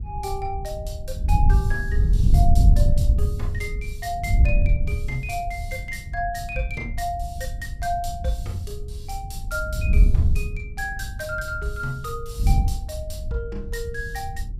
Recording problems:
wind noise; below 82 Hz, SNR -5 dB

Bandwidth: 15.5 kHz